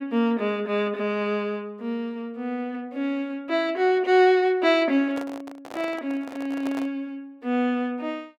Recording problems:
microphone handling noise; from 5 to 7 s; peak -7 dB vs average level

